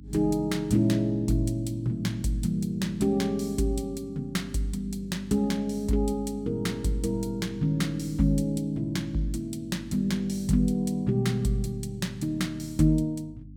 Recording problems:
hum; 50 Hz, harmonics up to 300 Hz, SNR 18 dB

